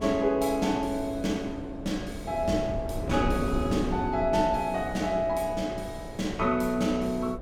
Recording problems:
hum; 60 Hz, harmonics up to 660 Hz, SNR 19 dB
wind noise; below 320 Hz, SNR 9 dB

